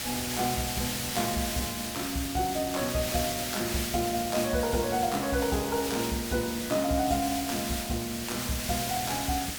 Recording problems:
hiss; SNR 3 dB

